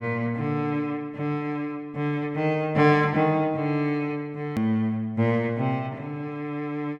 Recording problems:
hard cut with a click; at 4.5 s

